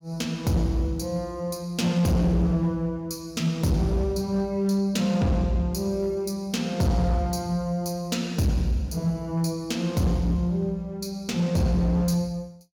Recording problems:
distorted audio; hard clipping, signal-to-distortion ratio 12 dB

